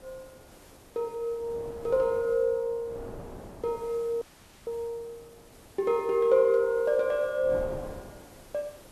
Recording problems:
background hiss; slope -3 dB per octave, SNR 27 dB
wind noise; below 650 Hz, SNR 19 dB
dropout; at 4 s

